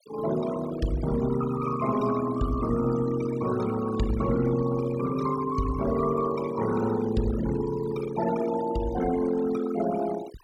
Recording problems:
denoising artefacts; signal-to-artefact ratio 13 dB

